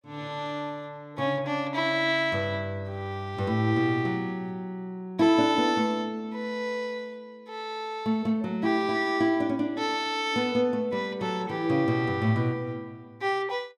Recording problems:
none

